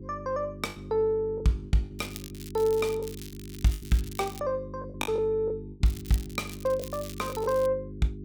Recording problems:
hum; 50 Hz, harmonics up to 400 Hz, SNR 12 dB
packet loss; 8% of the sound replaced, filled with the last packet
crackling; from 2 to 4.5 s and from 6 to 7.5 s; loose cable, SNR 16 dB

